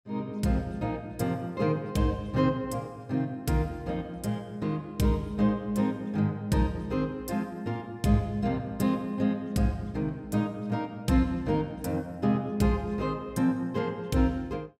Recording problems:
none

